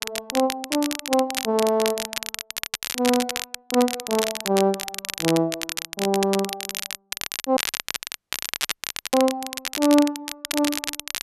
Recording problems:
crackling; vinyl, SNR 5 dB
audio cutting out; at 7.5 s for 1.5 s

